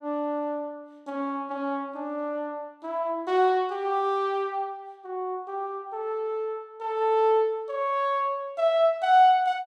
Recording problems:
none

